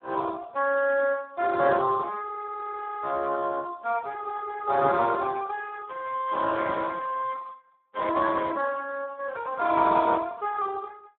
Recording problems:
telephone audio; 220 Hz to 2.1 kHz, Speex

